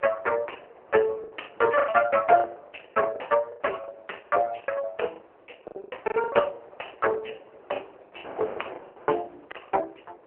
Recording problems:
telephone audio; 370 Hz to 2.9 kHz, AMR-NB
wind on the microphone; below 880 Hz, SNR 21 dB
packet loss; 15% of the sound replaced, filled with the last packet

